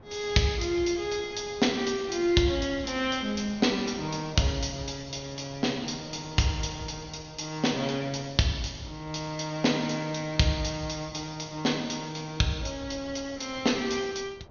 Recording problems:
low-pass filter; nothing above 6.6 kHz
wind on the microphone; below 610 Hz, SNR 22 dB

